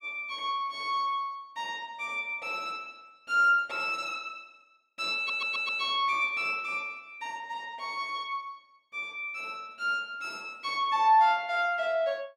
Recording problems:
stutter; at 5 s

